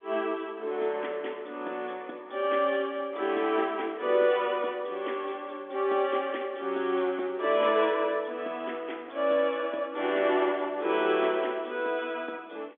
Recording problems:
phone line; 260 Hz to 3.5 kHz, G.711

